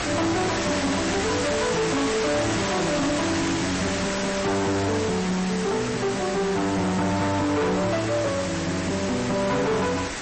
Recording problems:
lossy codec; MP3, log-spectral distance 12 dB, nothing above 8.2 kHz
distortion; hard clipping, signal-to-distortion ratio 7 dB
background hiss; slope -3 dB per octave, SNR 4 dB

